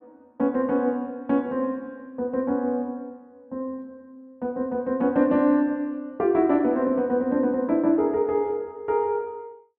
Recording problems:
none

